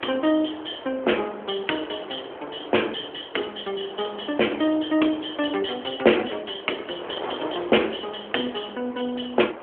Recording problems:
telephone audio; 260 Hz to 3.4 kHz, AMR-NB
wind on the microphone; below 1.1 kHz, SNR 12 dB

